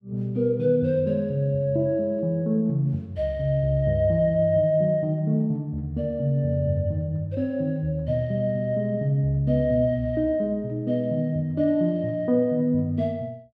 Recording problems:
none

